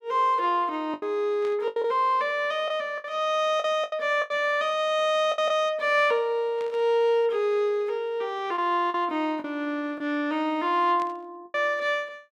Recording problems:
lost packets; 6% of the sound replaced, filled with the last packet
burst of static; at 1.5 s, at 6.5 s and at 11 s; peak -14 dB vs average level

